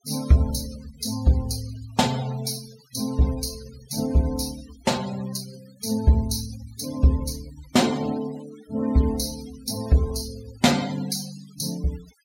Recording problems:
denoising artefacts; signal-to-artefact ratio 17 dB

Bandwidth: 16 kHz